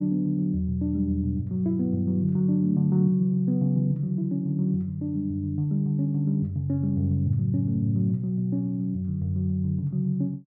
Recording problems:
none

